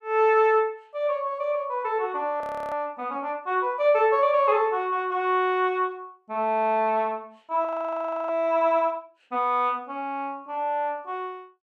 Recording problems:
frozen audio; at 2.5 s and at 7.5 s for 0.5 s

